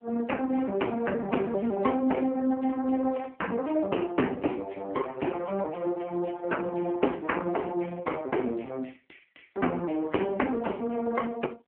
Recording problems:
phone line; 190 Hz to 3 kHz, AMR-NB
distorted audio; soft clipping, signal-to-distortion ratio 11 dB

